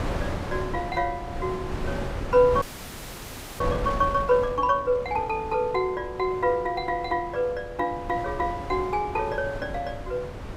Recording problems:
wind on the microphone; below 580 Hz, SNR 9 dB
audio freezing; at 2.5 s for 1 s

